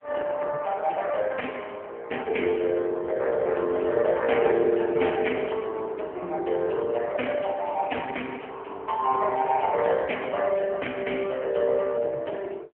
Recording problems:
phone line; 300 Hz to 3.2 kHz, AMR-NB

